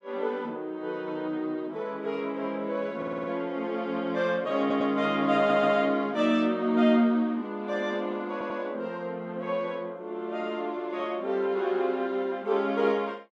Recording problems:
audio stuttering; 4 times, first at 3 s

